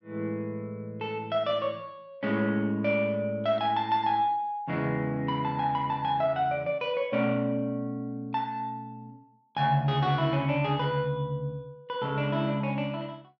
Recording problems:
none

